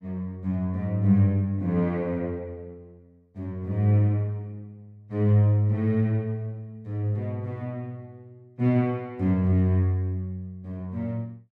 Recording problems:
none

